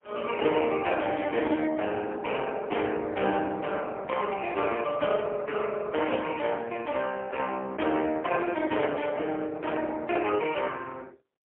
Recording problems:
telephone audio; 240 Hz to 3.2 kHz, AMR-NB, then MP3

